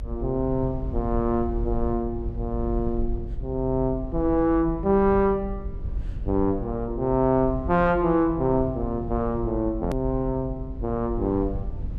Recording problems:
hum; 50 Hz, harmonics up to 600 Hz, SNR 20 dB
rumble; below 72 Hz, SNR 9 dB
hard cut with a click; at 10 s

